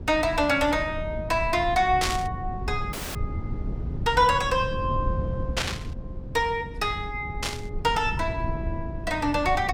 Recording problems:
low-frequency rumble; below 140 Hz, SNR 8 dB
burst of static; at 2 s, at 5.5 s and at 7.5 s; peak +3 dB vs average level
dropout; at 3 s

